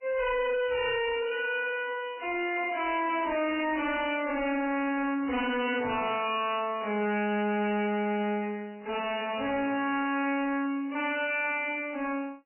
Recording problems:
lossy codec; MP3, log-spectral distance 5 dB, nothing above 2.5 kHz
distortion; soft clipping, signal-to-distortion ratio 5 dB

